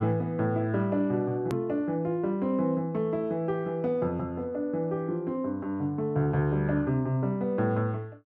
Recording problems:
hard cut with a click; at 1.5 s

